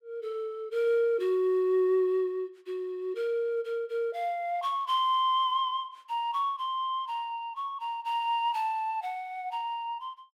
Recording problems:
none

